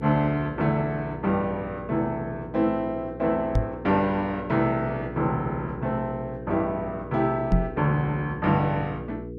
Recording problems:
hum; 60 Hz, harmonics up to 480 Hz, SNR 12 dB
knock on the microphone; at 3.5 s and at 7.5 s; peak +7 dB vs average level

